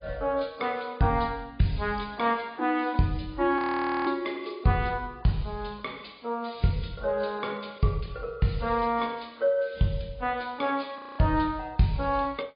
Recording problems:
treble cut off; nothing above 4.9 kHz
codec artefacts; AAC, log-spectral distance 3 dB
audio freezing; at 3.5 s and at 11 s

